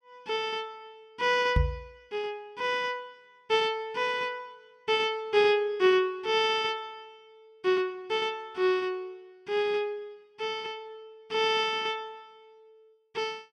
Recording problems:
knock on the microphone; at 1.5 s; peak +6 dB vs average level

